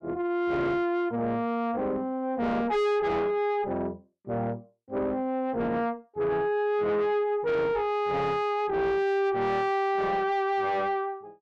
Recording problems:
distorted audio; soft clipping, signal-to-distortion ratio 7 dB

